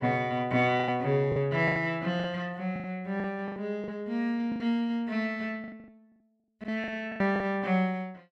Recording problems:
lost packets; 12% of the sound replaced, filled with the last packet

